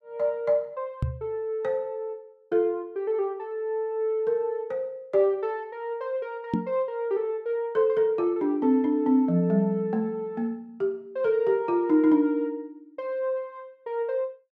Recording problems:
microphone bump; at 1 s and at 6.5 s; peak +5 dB vs average level

